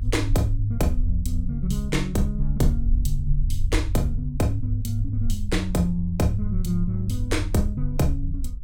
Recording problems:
low-frequency rumble; below 52 Hz, strongest tone 24 Hz, SNR 4 dB

